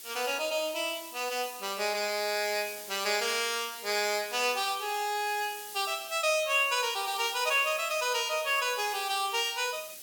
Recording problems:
hiss; SNR 13 dB

